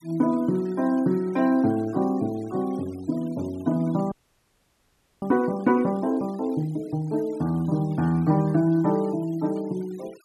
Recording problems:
denoising artefacts; signal-to-artefact ratio 26 dB
audio freezing; at 4 s for 1 s

